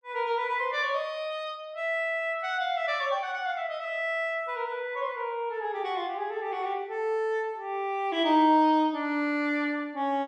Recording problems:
none

